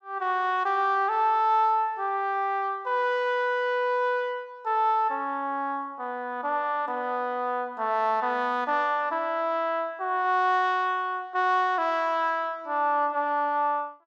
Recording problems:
none

